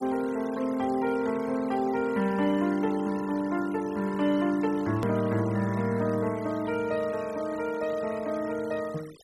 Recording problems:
noise reduction artefacts; signal-to-artefact ratio 19 dB
click at an edit; at 5 s

